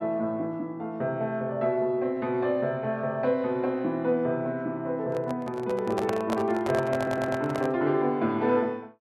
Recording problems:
handling noise; from 5 to 7.5 s; peak 0 dB vs average level
audio stuttering; at 7 s

